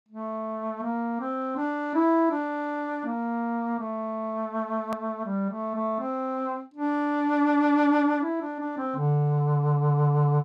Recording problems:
edit click; at 5 s

